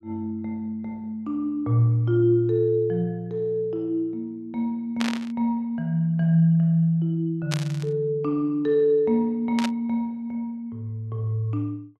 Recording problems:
static burst; at 5 s, at 7.5 s and at 9.5 s; peak 0 dB vs average level

